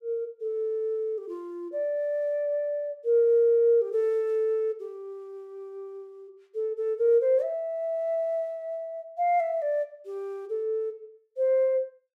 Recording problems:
none

